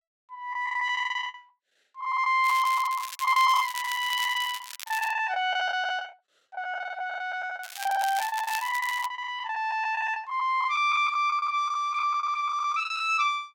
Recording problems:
packet loss; 17% of the sound replaced, filled with the last packet
crackling; from 2.5 to 5 s and from 7.5 to 9 s; loose cable, SNR 12 dB

